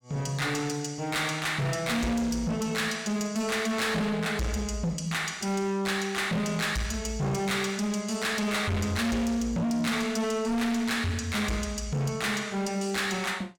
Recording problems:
distorted audio; hard clipping, signal-to-distortion ratio 7 dB

